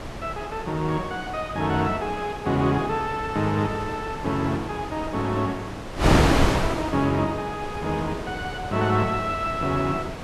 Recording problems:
wind on the microphone; below 1.1 kHz, SNR 4 dB

